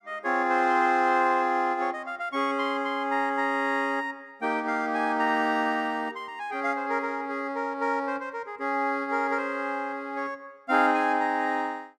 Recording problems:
none

